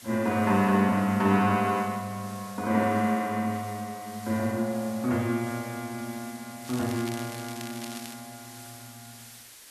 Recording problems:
background hiss; slope +1 dB per octave, SNR 18 dB
crackling; from 6.5 to 8 s; loose cable, SNR 15 dB

